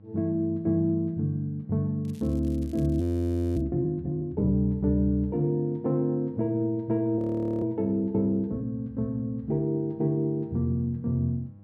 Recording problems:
electrical hum; 50 Hz, harmonics up to 800 Hz, SNR 24 dB
crackle; from 2 to 3.5 s; loose cable, SNR 29 dB
frozen audio; at 3 s for 0.5 s and at 7 s

